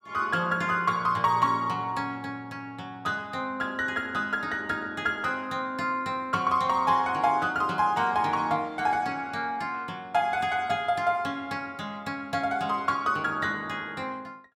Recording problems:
none

